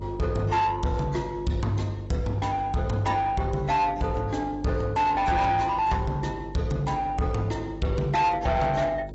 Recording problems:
codec artefacts; AAC, log-spectral distance 2 dB, nothing above 7.8 kHz
distortion; soft clipping, signal-to-distortion ratio 11 dB
hum; 50 Hz, harmonics up to 600 Hz, SNR 16 dB

